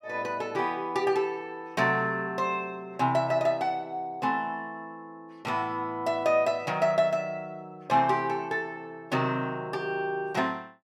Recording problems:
none

